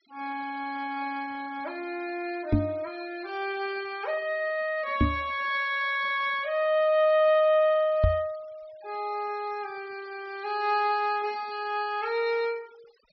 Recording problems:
treble missing; nothing above 5.5 kHz
noise reduction artefacts; signal-to-artefact ratio 24 dB
knock on the microphone; at 2.5 s, at 5 s and at 8 s; peak +8 dB vs average level

